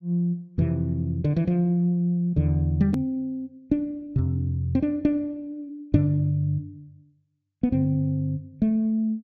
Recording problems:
low-pass filter; nothing above 8 kHz
click at an edit; at 3 s

